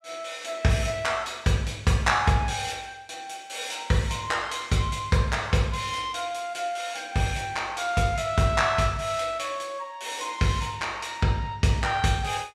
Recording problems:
none

